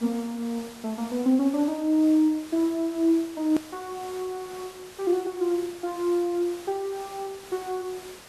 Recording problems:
background hiss; slope -2 dB per octave, SNR 18 dB
hard cut with a click; at 3.5 s

